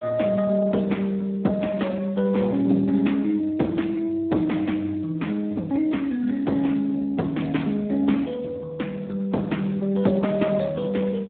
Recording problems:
telephone audio; 130 Hz to 3.7 kHz, Speex

